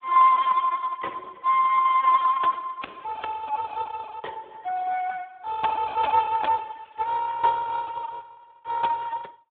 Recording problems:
telephone audio; 900 Hz to 2.6 kHz, Speex

